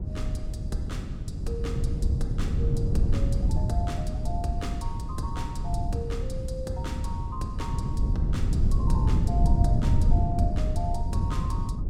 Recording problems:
wind noise; below 110 Hz, SNR -9 dB

